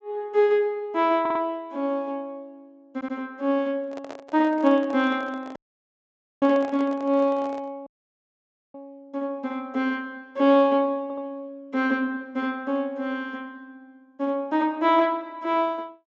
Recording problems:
treble missing; nothing above 8 kHz
stutter; at 1 s, at 3 s and at 11 s
microphone handling noise; from 4 to 7.5 s; peak -9 dB vs average level
audio cutting out; at 5.5 s for 1 s and at 8 s for 1 s

